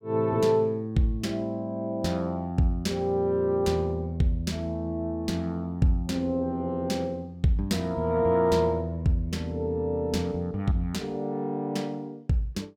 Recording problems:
none

